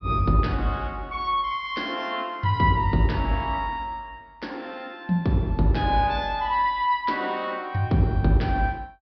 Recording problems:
low-pass filter; nothing above 5.5 kHz

